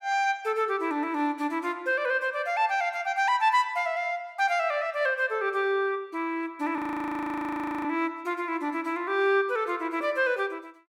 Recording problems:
frozen audio; at 7 s for 1 s

